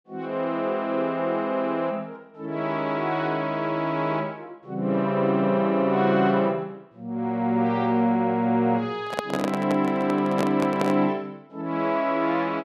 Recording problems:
handling noise; from 9 to 11 s; peak +1 dB vs average level

